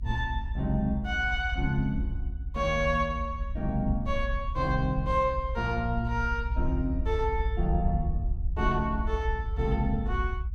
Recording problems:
low-frequency rumble; below 66 Hz, SNR 3 dB

